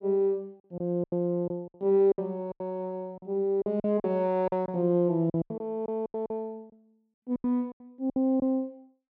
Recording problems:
packet loss; 13% of the sound replaced, filled with silence

